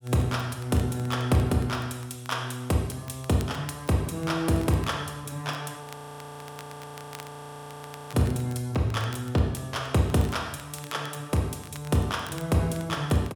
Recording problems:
crackling; vinyl, SNR 21 dB
frozen audio; at 6 s for 2.5 s

